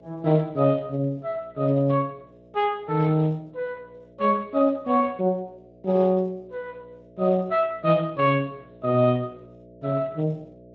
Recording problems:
lossy codec; Speex, log-spectral distance 2 dB
electrical hum; 60 Hz, harmonics up to 660 Hz, SNR 26 dB

